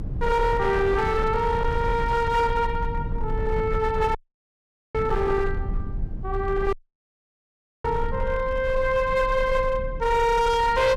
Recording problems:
distortion; hard clipping, signal-to-distortion ratio 11 dB
low-frequency rumble; below 94 Hz, SNR 8 dB
dropout; at 4 s for 1 s and at 6.5 s for 1 s

